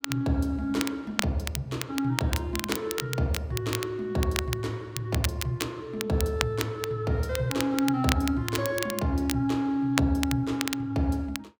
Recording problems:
crackling; vinyl, SNR 6 dB

